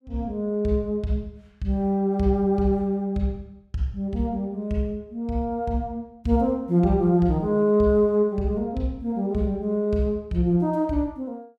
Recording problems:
none

